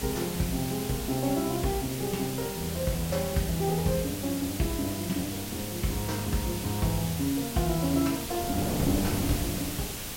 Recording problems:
hiss; slope +1 dB per octave, SNR 6 dB
wind noise; below 440 Hz, SNR 10 dB

